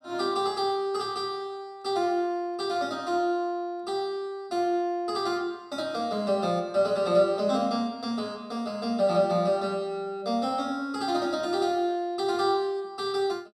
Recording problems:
none

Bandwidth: 13.5 kHz